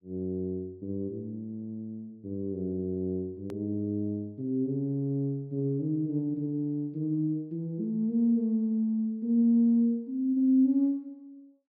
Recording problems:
click at an edit; at 3.5 s

